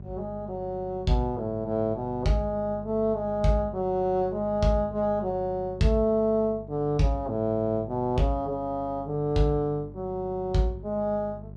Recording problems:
electrical hum; 50 Hz, harmonics up to 600 Hz, SNR 15 dB

